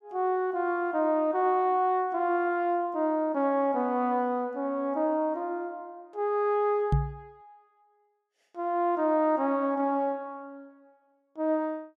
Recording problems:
microphone bump; at 7 s; peak +6 dB vs average level

